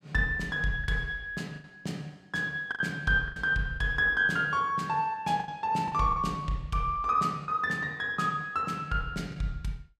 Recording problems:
lost packets; 6% of the sound replaced, filled with the last packet

